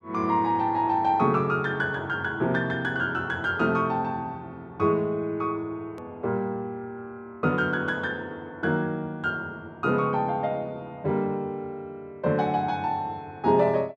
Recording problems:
click at an edit; at 6 s

